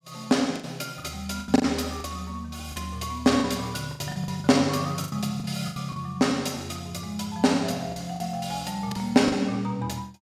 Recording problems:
lost packets; 10% of the sound replaced, filled with the last packet

